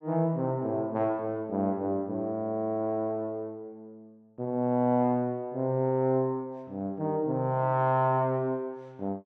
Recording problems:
none

